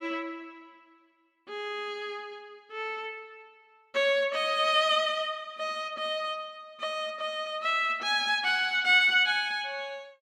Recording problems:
none

